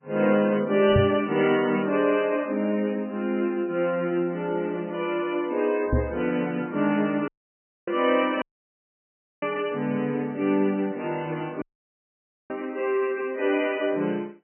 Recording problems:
codec artefacts; MP3, then AAC, log-spectral distance 3 dB, nothing above 2.7 kHz
microphone bump; at 1 s and at 6 s; peak +5 dB vs average level
audio cutting out; at 7.5 s for 0.5 s, at 8.5 s for 1 s and at 12 s for 1 s

